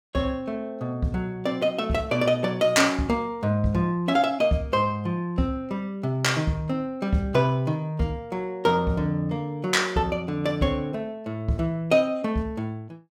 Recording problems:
none

